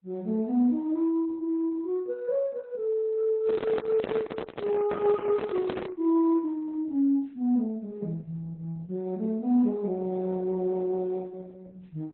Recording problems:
lossy compression; MP3, then Opus, log-spectral distance 2 dB, nothing above 3.9 kHz
handling noise; from 3.5 to 6 s; peak +2 dB vs average level

